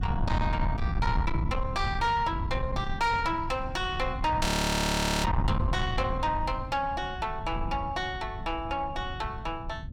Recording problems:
distorted audio; soft clipping, signal-to-distortion ratio 8 dB
rumble; below 180 Hz, SNR 3 dB
static burst; at 4.5 s; peak +3 dB vs average level
frozen audio; at 4.5 s for 1 s

